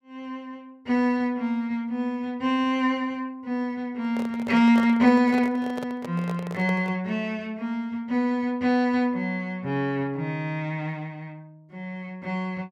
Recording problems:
handling noise; from 4 to 7 s; peak -6 dB vs average level

